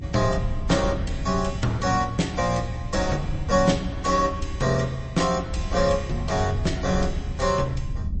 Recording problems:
lossy compression; MP3, log-spectral distance 3 dB, nothing above 7.8 kHz
low-frequency rumble; below 98 Hz, SNR 7 dB

